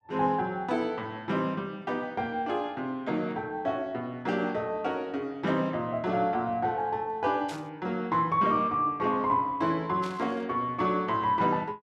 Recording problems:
static burst; at 7.5 s and at 10 s; peak -10 dB vs average level

